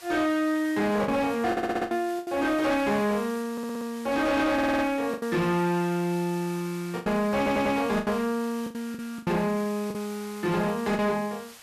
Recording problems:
distorted audio; hard clipping, uneven, signal-to-distortion ratio 10 dB
hiss; SNR 19 dB
packet loss; 7% of the sound replaced, filled with the last packet
audio stuttering; 4 times, first at 1.5 s
static burst; at 4 s; peak -13 dB vs average level

